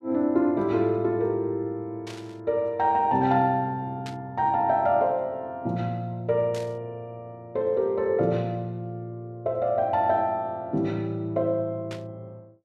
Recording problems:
static burst; 4 times, first at 2 s; peak -10 dB vs average level

